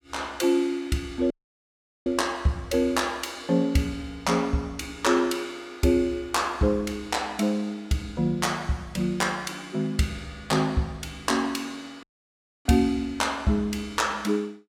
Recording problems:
audio cutting out; at 1.5 s for 1 s and at 12 s for 0.5 s

